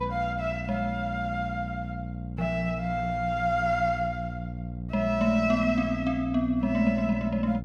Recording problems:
electrical hum; 60 Hz, harmonics up to 540 Hz, SNR 8 dB

